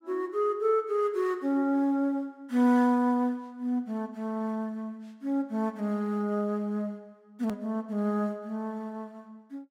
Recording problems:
hard cut with a click; at 7.5 s

